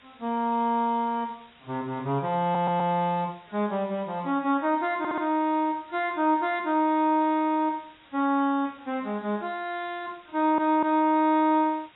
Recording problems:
lossy codec; AAC, log-spectral distance 7 dB, nothing above 3.6 kHz
background hiss; SNR 28 dB
audio stuttering; at 2.5 s, at 5 s and at 10 s

